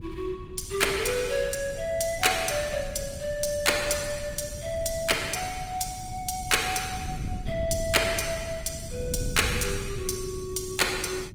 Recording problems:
lossy codec; Opus, log-spectral distance 5 dB, nothing above 18 kHz
wind on the microphone; below 150 Hz, SNR 11 dB

